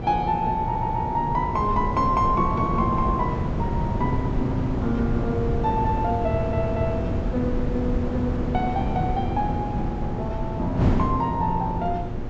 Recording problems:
treble missing; nothing above 8 kHz
hum; 60 Hz, harmonics up to 1.4 kHz, SNR 12 dB
wind noise; below 260 Hz, SNR 2 dB
audio stuttering; at 0.5 s and at 6.5 s

